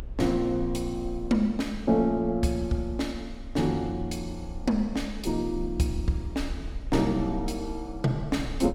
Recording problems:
low-frequency rumble; below 56 Hz, strongest tone 28 Hz, SNR 13 dB

